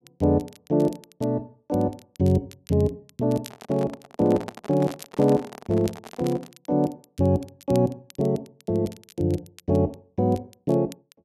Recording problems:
crackle; vinyl, SNR 24 dB
handling noise; from 3.5 to 6.5 s; peak -6 dB vs average level

